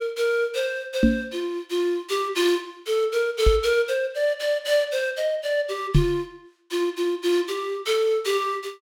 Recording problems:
microphone thump; at 1 s, at 3.5 s and at 6 s; peak +9 dB vs average level

